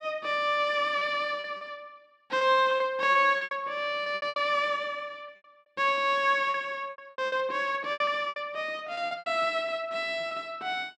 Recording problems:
lost packets; 12% of the sound replaced, filled with repeated pitch periods

